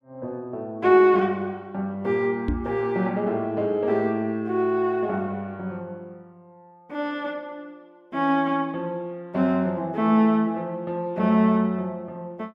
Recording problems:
microphone thump; at 2.5 s; peak +1 dB vs average level

